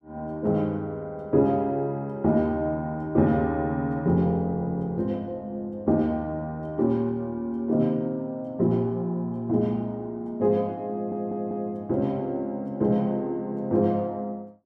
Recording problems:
stutter; at 11 s

